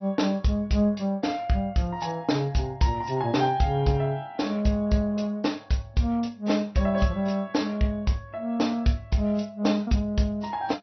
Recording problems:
treble missing; nothing above 5.9 kHz
codec artefacts; AAC, log-spectral distance 2 dB

